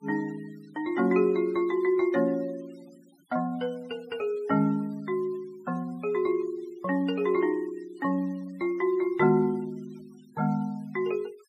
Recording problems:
noise reduction artefacts; signal-to-artefact ratio 27 dB

